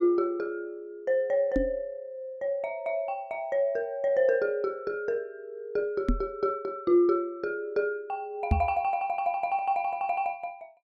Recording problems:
microphone bump; at 1.5 s, at 6 s and at 8.5 s; peak +8 dB vs average level

